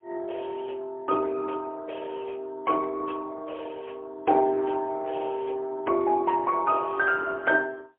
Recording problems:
telephone audio; 300 Hz to 2.8 kHz, AMR-NB, then MP3

